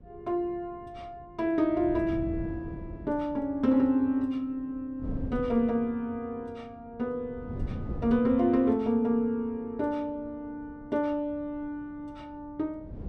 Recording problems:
wind on the microphone; below 210 Hz, SNR 11 dB

